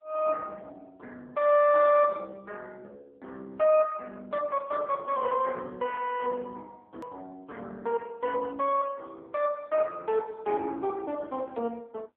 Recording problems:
telephone audio; 300 Hz to 3.1 kHz, AMR-NB
edit click; at 7 s

